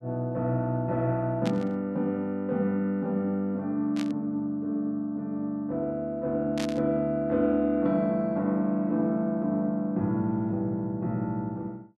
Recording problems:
burst of static; at 1.5 s, at 4 s and at 6.5 s; peak -4 dB vs average level

